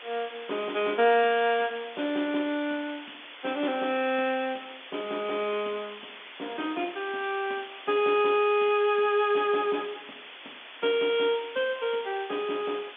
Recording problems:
telephone audio; 220 Hz to 3.5 kHz, G.711
hiss; SNR 15 dB

